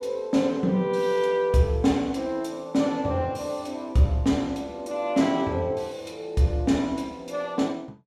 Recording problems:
none

